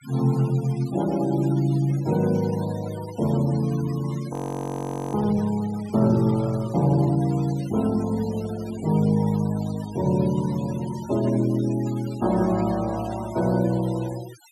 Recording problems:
noise reduction artefacts; signal-to-artefact ratio 19 dB
audio freezing; at 4.5 s for 1 s

